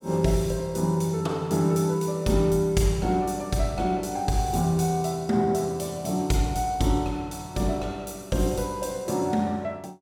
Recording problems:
none

